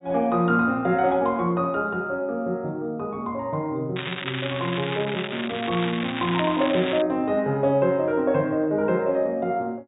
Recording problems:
treble cut off; nothing above 4 kHz
crackling; from 4 to 7 s; loose cable, SNR 7 dB

